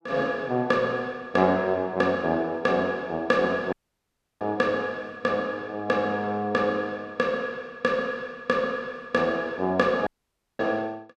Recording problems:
dropout; at 3.5 s for 0.5 s and at 10 s for 0.5 s

